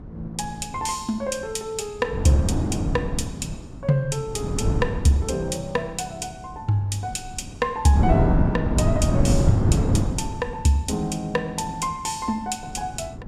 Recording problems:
wind on the microphone; below 220 Hz, SNR -1 dB

